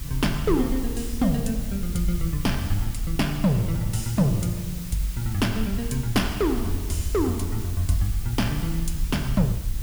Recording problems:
hum; 50 Hz, harmonics up to 300 Hz, SNR 19 dB
hiss; slope +1 dB per octave, SNR 13 dB
wind on the microphone; below 64 Hz, SNR 7 dB

